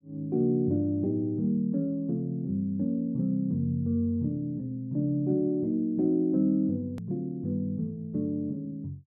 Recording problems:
edit click; at 7 s

